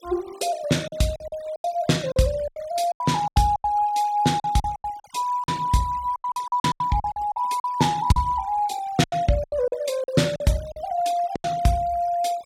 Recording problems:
denoising artefacts; signal-to-artefact ratio 21 dB
packet loss; 14% of the sound replaced, filled with silence

